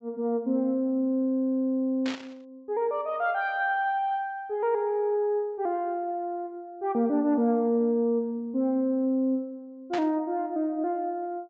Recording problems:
treble missing; nothing above 8 kHz
burst of static; at 2 s and at 10 s; peak -4 dB vs average level

